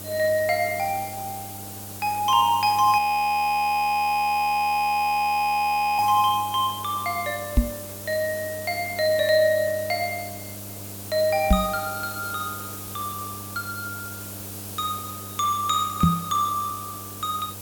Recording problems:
hum; 50 Hz, harmonics up to 800 Hz, SNR 19 dB
background hiss; SNR 12 dB
audio freezing; at 3 s for 3 s
microphone bump; at 7.5 s, at 12 s and at 16 s; peak +8 dB vs average level

